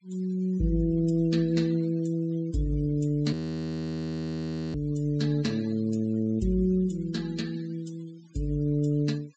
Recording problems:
treble cut off; nothing above 8 kHz
noise reduction artefacts; signal-to-artefact ratio 24 dB
frozen audio; at 3.5 s for 1.5 s

